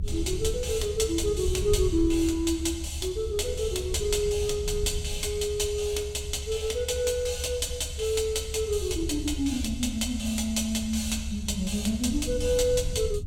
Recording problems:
rumble; below 76 Hz, SNR 8 dB

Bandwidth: 17 kHz